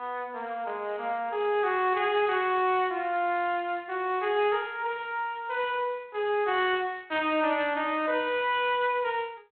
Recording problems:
phone line; 240 Hz to 3.4 kHz, G.726

